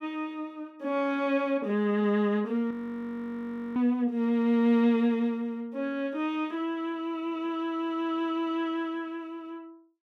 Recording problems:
audio freezing; at 2.5 s for 1 s

